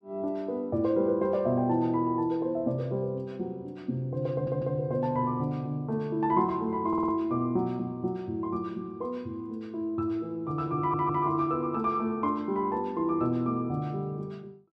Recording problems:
audio stuttering; at 4.5 s, at 7 s and at 11 s

